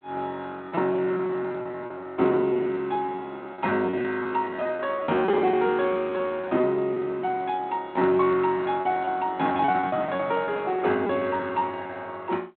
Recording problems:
telephone audio; 130 Hz to 3.8 kHz, G.726
lost packets; 17% of the sound replaced, filled with repeated pitch periods

